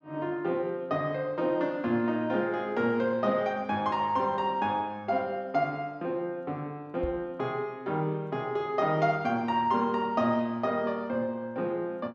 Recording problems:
microphone thump; at 7 s; peak -5 dB vs average level

